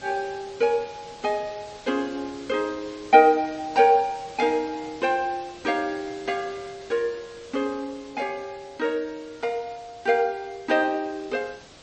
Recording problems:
lossy codec; MP3, log-spectral distance 5 dB, nothing above 8.2 kHz
hiss; slope -3 dB per octave, SNR 21 dB

